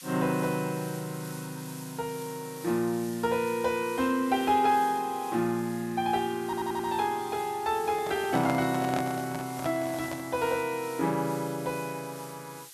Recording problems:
hiss; slope +4 dB per octave, SNR 16 dB
audio stuttering; at 6.5 s
handling noise; from 8 to 10 s; peak 0 dB vs average level

